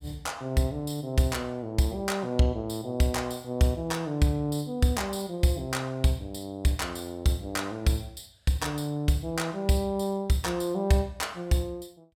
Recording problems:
none

